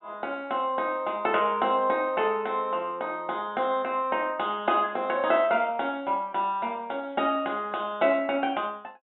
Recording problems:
treble missing; nothing above 3.8 kHz

